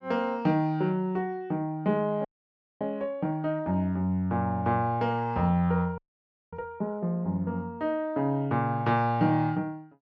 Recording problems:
audio freezing; at 2.5 s for 0.5 s and at 6 s for 0.5 s

